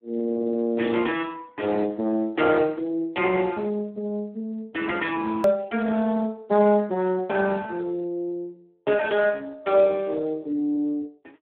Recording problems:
telephone audio; 190 Hz to 3.5 kHz, Speex
edit click; at 5.5 s

